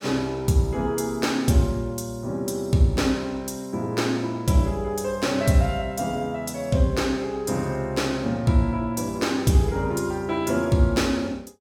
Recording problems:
none

